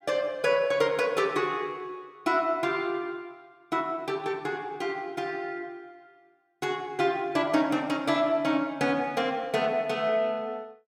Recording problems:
none

